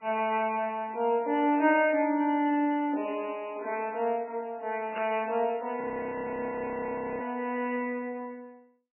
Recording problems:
codec artefacts; MP3, log-spectral distance 3 dB, nothing above 2.4 kHz
static burst; at 5 s; peak -6 dB vs average level
audio freezing; at 6 s for 1.5 s

